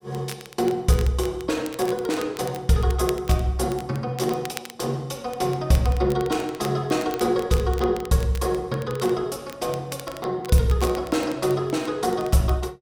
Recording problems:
crackling; vinyl, SNR 18 dB

